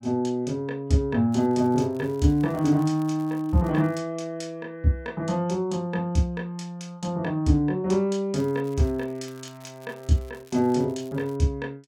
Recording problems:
crackle; from 1.5 to 4 s and from 8.5 to 11 s; loose cable, SNR 28 dB

